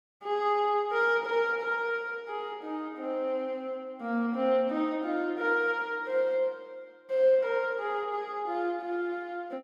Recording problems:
none

